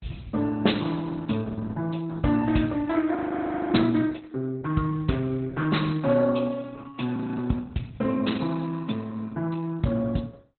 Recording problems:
lossy codec; Opus, log-spectral distance 4 dB, nothing above 4.1 kHz
audio freezing; at 3 s for 0.5 s and at 7 s

